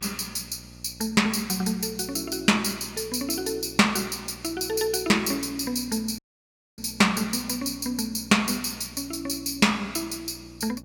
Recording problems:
hum; 60 Hz, harmonics up to 900 Hz, SNR 21 dB
dropout; at 6 s for 0.5 s

